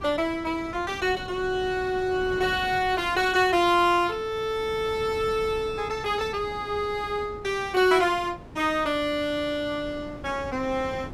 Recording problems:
wind on the microphone; below 410 Hz, SNR 17 dB

